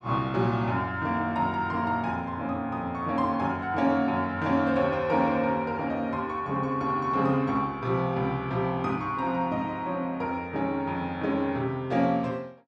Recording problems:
none

